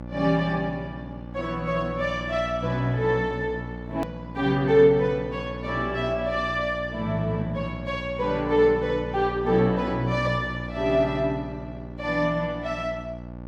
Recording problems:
mains hum; 60 Hz, harmonics up to 1.4 kHz, SNR 11 dB
edit click; at 4 s

